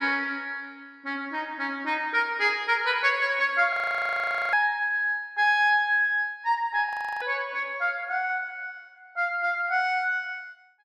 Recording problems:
frozen audio; at 3.5 s for 1 s and at 7 s

